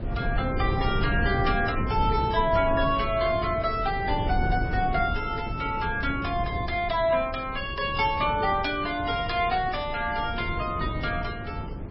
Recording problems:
lossy compression; MP3, log-spectral distance 3 dB, nothing above 5.3 kHz
wind on the microphone; below 210 Hz, SNR 6 dB
crackling; from 1 to 4 s, at 7.5 s and at 10 s; loose cable, SNR 27 dB

